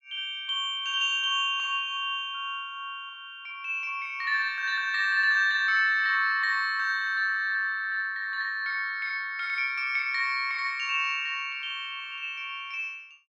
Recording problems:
none

